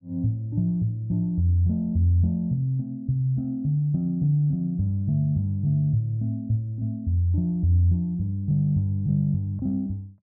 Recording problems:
none

